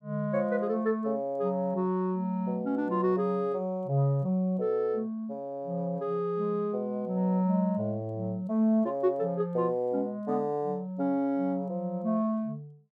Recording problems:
none

